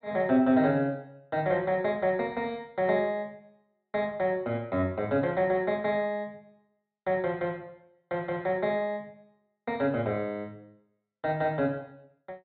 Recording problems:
treble cut off; nothing above 4 kHz

